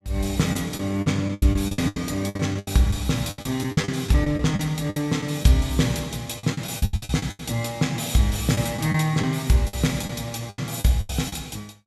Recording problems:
lost packets; 14% of the sound replaced, filled with the last packet

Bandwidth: 14.5 kHz